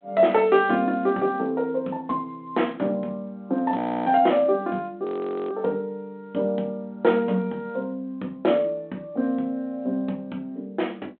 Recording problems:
phone line; 220 Hz to 3.4 kHz, G.726
frozen audio; at 4 s and at 5 s

